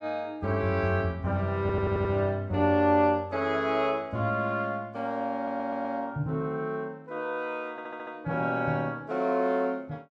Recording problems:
audio stuttering; at 1.5 s, at 5.5 s and at 7.5 s

